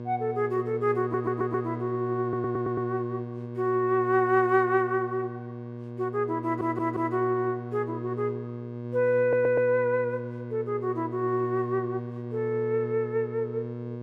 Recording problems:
electrical hum; 60 Hz, harmonics up to 1.1 kHz, SNR 9 dB
audio stuttering; 4 times, first at 1 s

